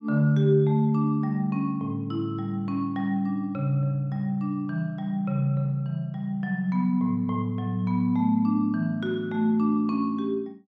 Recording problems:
none

